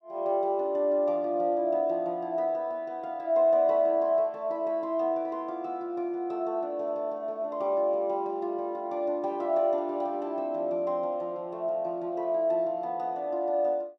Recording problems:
none

